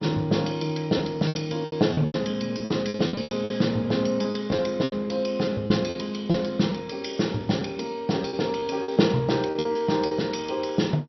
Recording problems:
codec artefacts; MP2, log-spectral distance 4 dB, nothing above 5.8 kHz
lost packets; 12% of the sound replaced, filled with repeated pitch periods

